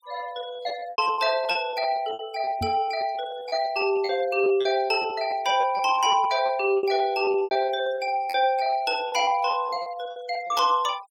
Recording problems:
denoising artefacts; signal-to-artefact ratio 23 dB
lost packets; 16% of the sound replaced, filled with repeated pitch periods
microphone thump; at 2.5 s; peak -4 dB vs average level

